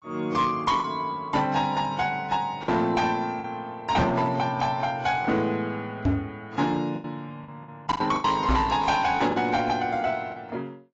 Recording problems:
lossy codec; AAC, log-spectral distance 2 dB, nothing above 7.3 kHz
distorted audio; hard clipping, uneven, signal-to-distortion ratio 11 dB
lost packets; 5% of the sound replaced, filled with the last packet
microphone thump; at 4 s, at 6 s and at 8.5 s; peak +5 dB vs average level

